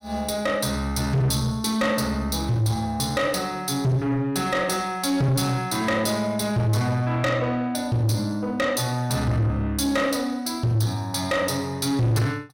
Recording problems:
distorted audio; soft clipping, signal-to-distortion ratio 8 dB

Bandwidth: 16.5 kHz